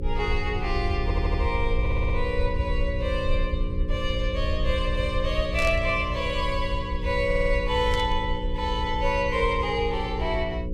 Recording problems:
electrical hum; 60 Hz, harmonics up to 540 Hz, SNR 7 dB
rumble; below 72 Hz, SNR 3 dB
stutter; at 1 s, at 2 s and at 7.5 s
static burst; at 5.5 s and at 8 s; peak -5 dB vs average level

